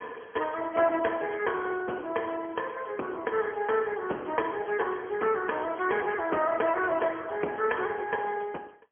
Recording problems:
telephone audio; 300 Hz to 3.2 kHz, AMR-NB, then MP3

